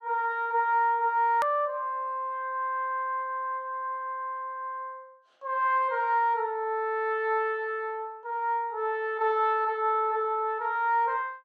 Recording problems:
click at an edit; at 1.5 s

